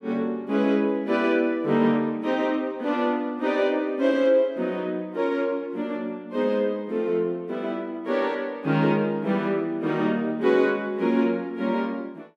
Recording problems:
none

